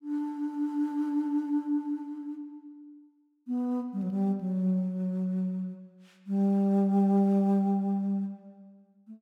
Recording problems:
none

